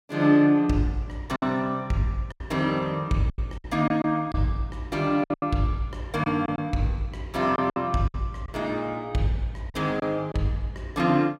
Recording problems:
lost packets; 7% of the sound replaced, filled with silence

